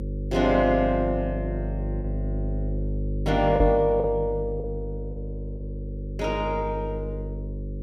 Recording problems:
hum; 50 Hz, harmonics up to 550 Hz, SNR 6 dB
packet loss; 3% of the sound replaced, filled with the last packet
microphone bump; at 3.5 s; peak +3 dB vs average level

